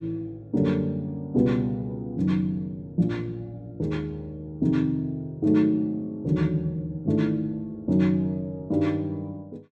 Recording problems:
none

